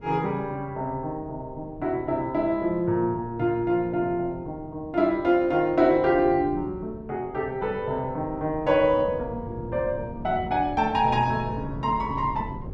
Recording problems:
wind on the microphone; below 270 Hz, SNR 15 dB

